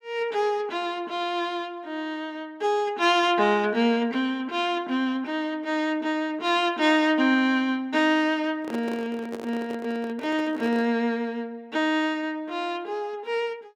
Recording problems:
handling noise; from 8.5 to 11 s; peak -6 dB vs average level

